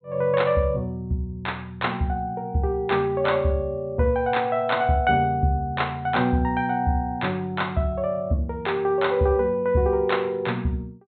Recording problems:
low-pass filter; nothing above 4 kHz

